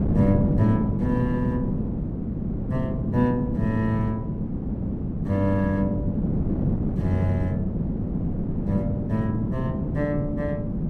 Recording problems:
wind noise; below 250 Hz, SNR 0 dB

